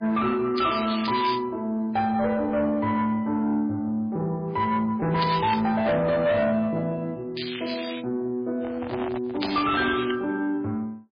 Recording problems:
lossy codec; MP3, log-spectral distance 5 dB, nothing above 4.8 kHz
distorted audio; soft clipping, signal-to-distortion ratio 12 dB
crackling; 4 times, first at 0.5 s; loose cable, SNR 8 dB
microphone handling noise; from 8.5 to 10 s; peak -4 dB vs average level

